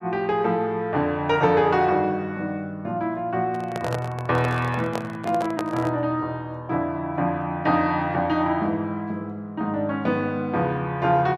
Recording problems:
handling noise; from 3.5 to 6 s; peak 0 dB vs average level

